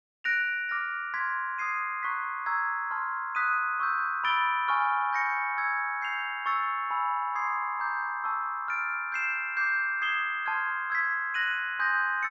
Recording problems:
none

